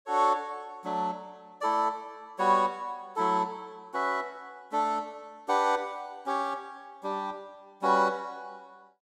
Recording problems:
none

